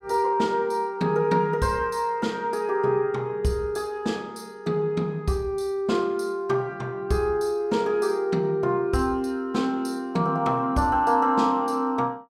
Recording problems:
none

